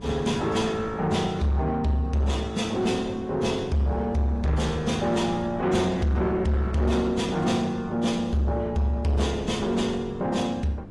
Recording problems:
lossy compression; AAC, log-spectral distance 2 dB
distorted audio; soft clipping, signal-to-distortion ratio 11 dB
hum; 50 Hz, harmonics up to 600 Hz, SNR 20 dB
wind on the microphone; below 500 Hz, SNR 18 dB

